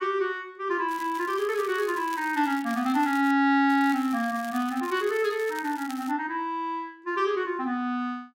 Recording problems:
crackle; from 1 to 3.5 s and from 3.5 to 6 s; loose cable, SNR 19 dB

